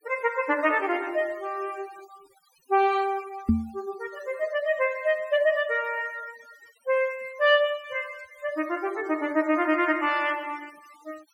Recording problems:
noise reduction artefacts; signal-to-artefact ratio 24 dB
microphone thump; at 3.5 s; peak +7 dB vs average level

